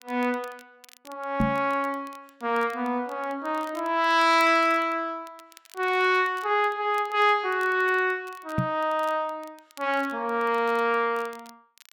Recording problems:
crackle; vinyl, SNR 27 dB
knock on the microphone; at 1.5 s and at 8.5 s; peak +3 dB vs average level

